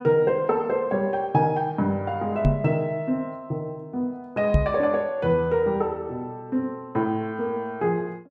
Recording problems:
microphone thump; at 2.5 s and at 4.5 s; peak +8 dB vs average level

